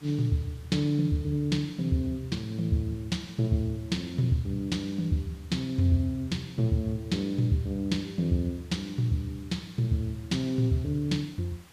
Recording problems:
hiss; slope -2 dB per octave, SNR 26 dB

